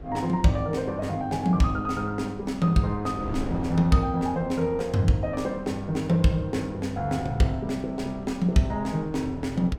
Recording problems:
wind on the microphone; below 370 Hz, SNR 16 dB

